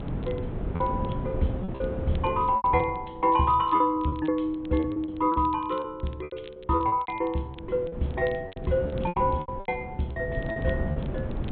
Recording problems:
treble cut off; nothing above 4 kHz
wind noise; below 270 Hz, SNR 7 dB
crackling; vinyl, SNR 28 dB
lost packets; 13% of the sound replaced, filled with repeated pitch periods

